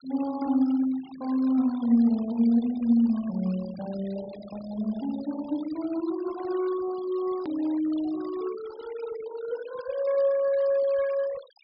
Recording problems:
low-pass filter; nothing above 5.5 kHz
noise reduction artefacts; signal-to-artefact ratio 20 dB
hard cut with a click; at 7.5 s

